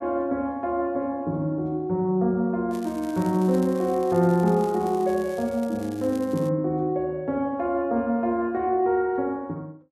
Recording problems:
crackling; from 2.5 to 6.5 s; loose cable, SNR 23 dB

